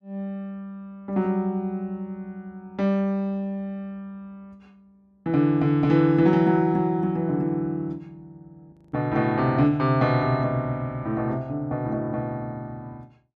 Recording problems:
audio freezing; at 8.5 s

